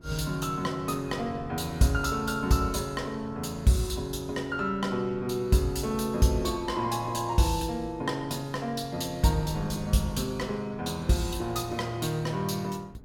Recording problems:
wind on the microphone; below 300 Hz, SNR 19 dB

